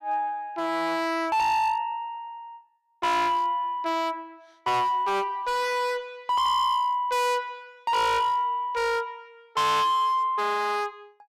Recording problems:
distortion; hard clipping, signal-to-distortion ratio 7 dB

